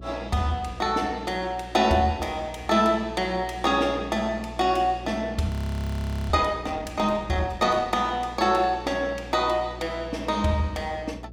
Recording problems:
hum; 60 Hz, harmonics up to 660 Hz, SNR 17 dB
frozen audio; at 5.5 s for 1 s

